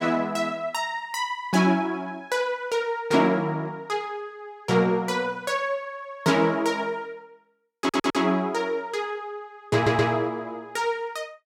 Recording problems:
audio stuttering; at 8 s and at 9.5 s

